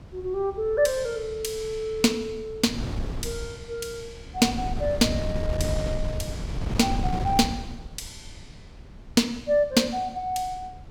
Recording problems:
wind on the microphone; below 160 Hz, SNR 6 dB

